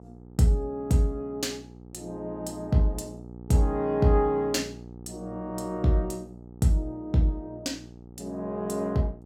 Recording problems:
hum; 60 Hz, harmonics up to 900 Hz, SNR 17 dB

